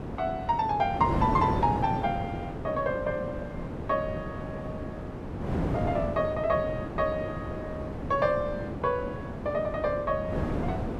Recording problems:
wind on the microphone; below 480 Hz, SNR 4 dB

